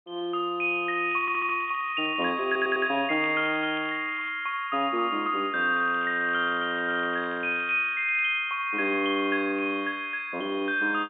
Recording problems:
phone line; 220 Hz to 3.4 kHz, G.711
crackle; from 1 to 4.5 s and from 6 to 8.5 s; loose cable, SNR 24 dB
audio stuttering; at 1 s and at 2.5 s

